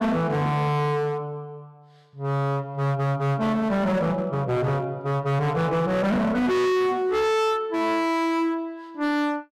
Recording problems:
distorted audio; hard clipping, signal-to-distortion ratio 6 dB

